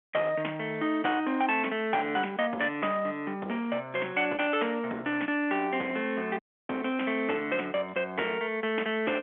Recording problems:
phone line; 240 Hz to 3.5 kHz, G.711
distortion; hard clipping, uneven, signal-to-distortion ratio 14 dB
dropout; at 6.5 s

